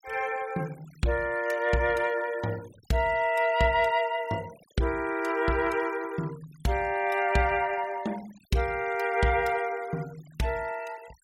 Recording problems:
noise reduction artefacts; signal-to-artefact ratio 22 dB

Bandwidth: 16.5 kHz